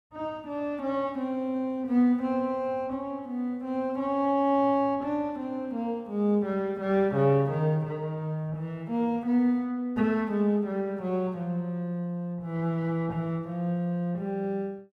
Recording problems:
none

